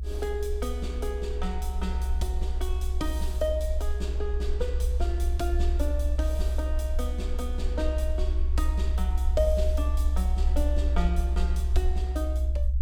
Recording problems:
rumble; below 66 Hz, strongest tone 64 Hz, SNR -5 dB

